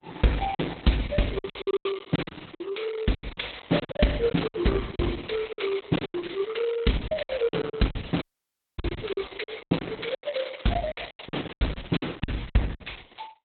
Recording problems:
lossy compression; Opus, log-spectral distance 7 dB, nothing above 4.1 kHz
lost packets; 16% of the sound replaced, filled with silence
dropout; at 8 s for 0.5 s

